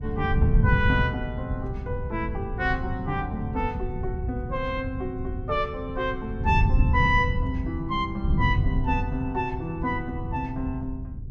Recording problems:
wind noise; below 130 Hz, SNR 1 dB

